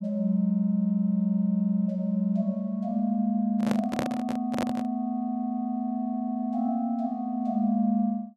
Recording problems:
handling noise; from 3.5 to 5 s; peak +1 dB vs average level

